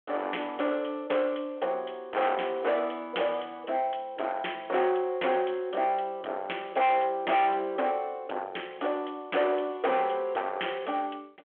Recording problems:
phone line; 320 Hz to 3.3 kHz, G.726
distortion; soft clipping, signal-to-distortion ratio 7 dB

